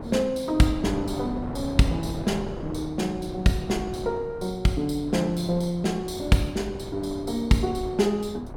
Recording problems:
wind on the microphone; below 490 Hz, SNR 11 dB

